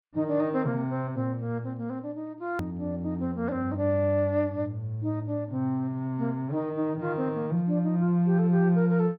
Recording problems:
treble missing; nothing above 5.1 kHz
edit click; at 2.5 s

